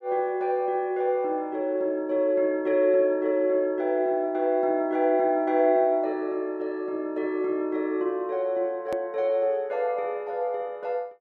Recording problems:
hard cut with a click; at 9 s

